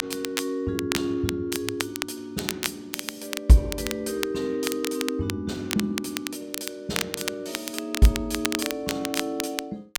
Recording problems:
crackling; vinyl, SNR 5 dB

